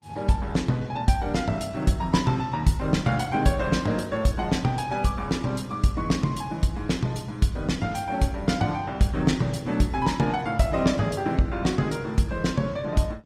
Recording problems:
lossy codec; Opus, log-spectral distance 3 dB, nothing above 18.3 kHz

